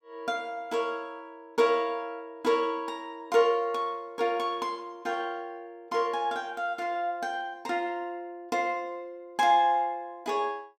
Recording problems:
none

